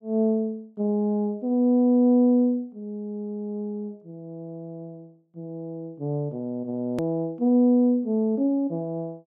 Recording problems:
hard cut with a click; at 7 s

